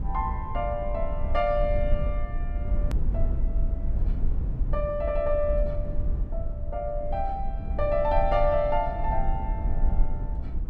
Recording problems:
low-frequency rumble; below 58 Hz, strongest tone 20 Hz, SNR 2 dB
hard cut with a click; at 3 s

